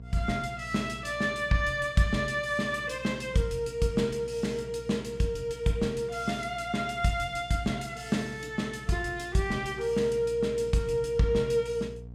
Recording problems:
hum; 60 Hz, harmonics up to 480 Hz, SNR 18 dB

